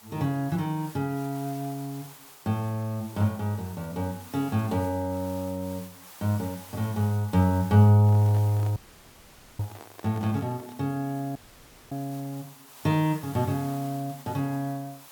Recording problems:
background hiss; SNR 19 dB
microphone handling noise; from 8 to 11 s; peak -11 dB vs average level
audio cutting out; at 9 s for 1 s and at 11 s for 0.5 s

